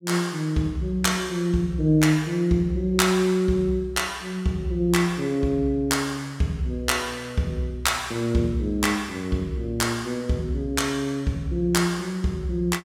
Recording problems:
none

